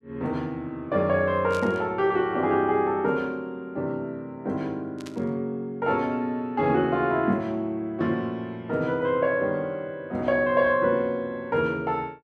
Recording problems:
burst of static; at 1.5 s and at 5 s; peak -10 dB vs average level

